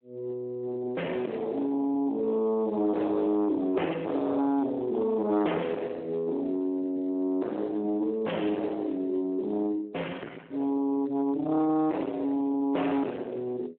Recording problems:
phone line; 260 Hz to 3.1 kHz, Speex
distortion; soft clipping, signal-to-distortion ratio 8 dB

